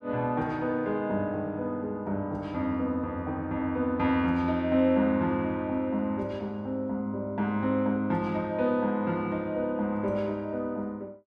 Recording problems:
none

